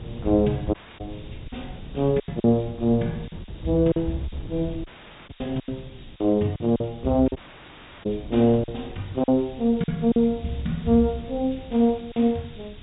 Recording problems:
treble cut off; nothing above 4 kHz
hiss; SNR 27 dB
wind noise; below 170 Hz, SNR 17 dB
lost packets; 8% of the sound replaced, filled with silence
dropout; at 0.5 s, at 5 s and at 7.5 s for 0.5 s

